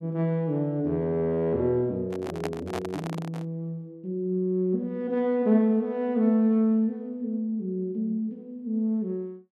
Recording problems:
handling noise; from 2 to 3.5 s; peak -2 dB vs average level

